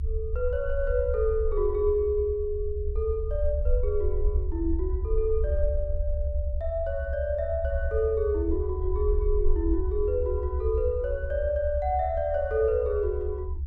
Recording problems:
rumble; below 72 Hz, SNR 3 dB

